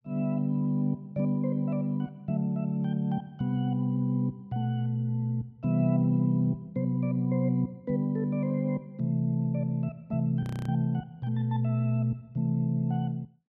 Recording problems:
audio freezing; at 10 s

